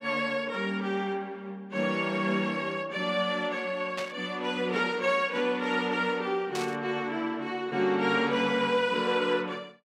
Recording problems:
static burst; at 4 s and at 6.5 s; peak -4 dB vs average level

